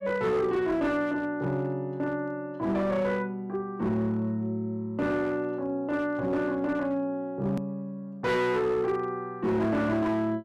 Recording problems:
distorted audio; hard clipping, signal-to-distortion ratio 12 dB
click at an edit; at 7.5 s

